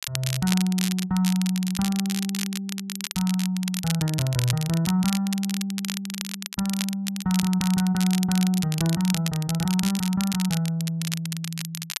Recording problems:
crackle; vinyl, SNR 7 dB

